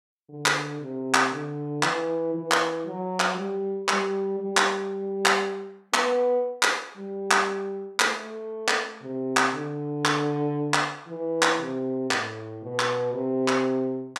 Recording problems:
none

